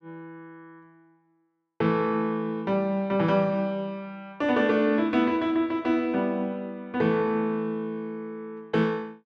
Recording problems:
none

